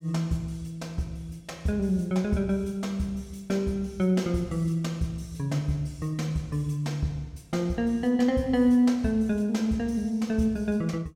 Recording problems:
none

